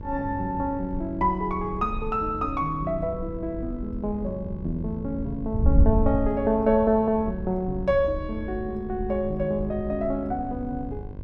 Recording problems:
electrical hum; 50 Hz, harmonics up to 1.1 kHz, SNR 16 dB
wind on the microphone; below 76 Hz, SNR 7 dB

